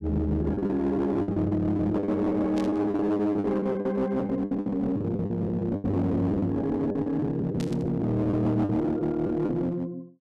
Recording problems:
distorted audio; hard clipping, uneven, signal-to-distortion ratio 10 dB
packet loss; 15% of the sound replaced, filled with the last packet
static burst; at 2.5 s and at 7.5 s; peak -10 dB vs average level

